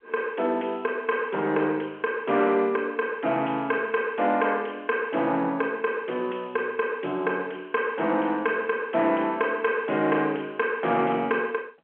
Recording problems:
phone line; 220 Hz to 3.3 kHz, G.711
distortion; soft clipping, signal-to-distortion ratio 12 dB

